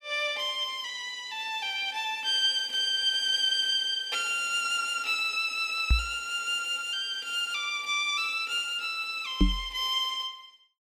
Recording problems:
microphone thump; at 6 s and at 9.5 s; peak +7 dB vs average level

